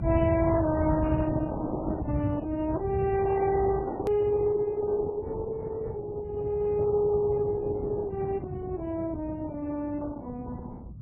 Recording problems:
codec artefacts; Opus, then MP3, log-spectral distance 3 dB, nothing above 13.1 kHz
rumble; below 140 Hz, SNR 6 dB
click at an edit; at 4 s

